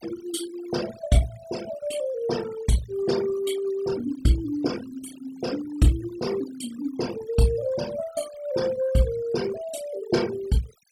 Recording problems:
noise reduction artefacts; signal-to-artefact ratio 15 dB

